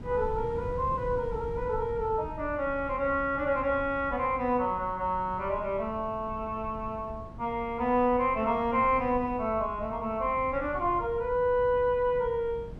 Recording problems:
wind noise; below 160 Hz, SNR 15 dB

